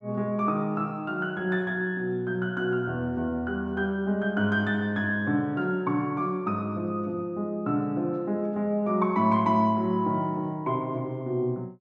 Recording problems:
none

